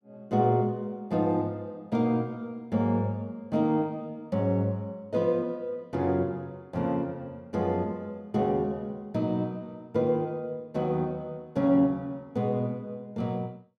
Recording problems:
none

